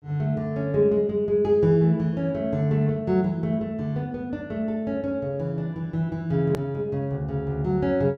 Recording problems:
edit click; at 6.5 s

